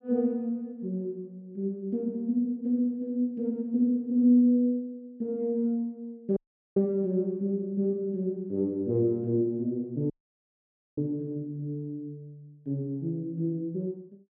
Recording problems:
dropout; at 6.5 s and at 10 s for 1 s

